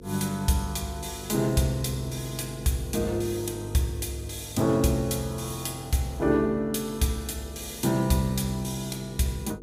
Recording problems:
electrical hum; 50 Hz, harmonics up to 500 Hz, SNR 16 dB

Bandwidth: 15.5 kHz